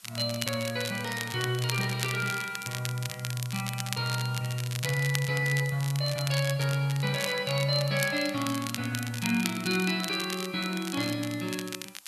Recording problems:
hiss; slope +2 dB per octave, SNR 23 dB
crackling; vinyl, SNR 8 dB

